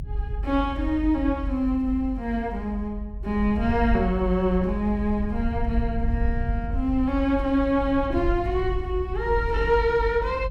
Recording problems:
low-frequency rumble; below 70 Hz, SNR 6 dB

